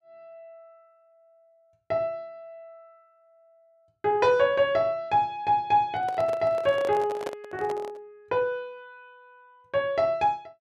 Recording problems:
handling noise; from 6 to 8 s; peak -4 dB vs average level

